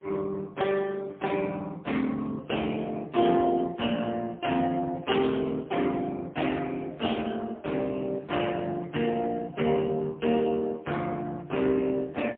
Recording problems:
phone line; 170 Hz to 3.5 kHz, AMR-NB, then MP3

